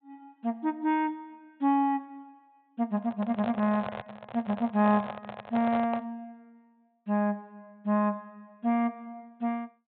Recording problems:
treble cut off; nothing above 4 kHz
microphone handling noise; from 3 to 6 s; peak -3 dB vs average level

